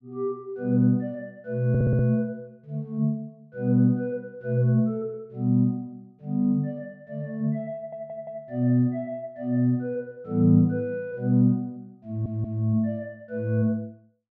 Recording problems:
stutter; at 1.5 s, at 8 s and at 12 s

